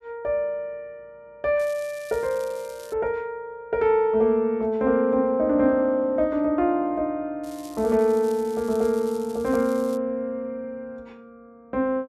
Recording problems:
crackle; from 1.5 to 3 s and from 7.5 to 10 s; loose cable, SNR 22 dB

